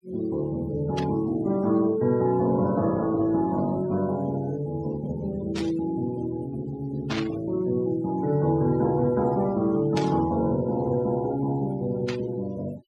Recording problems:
noise reduction artefacts; signal-to-artefact ratio 21 dB
burst of static; 5 times, first at 1 s; peak -3 dB vs average level

